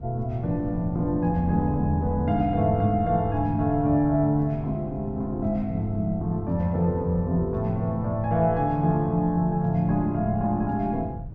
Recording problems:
wind on the microphone; below 140 Hz, SNR 14 dB

